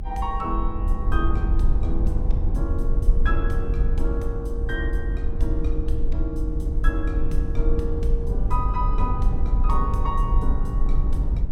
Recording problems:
rumble; below 56 Hz, SNR -6 dB

